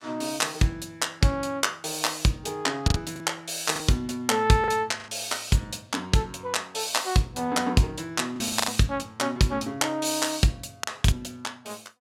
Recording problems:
lost packets; 4% of the sound replaced, filled with the last packet

